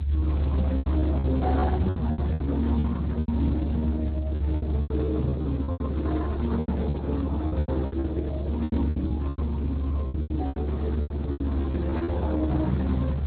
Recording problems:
lossy compression; Opus, then Speex, log-spectral distance 3 dB
rumble; below 76 Hz, strongest tone 72 Hz, SNR -2 dB
lost packets; 15% of the sound replaced, filled with repeated pitch periods

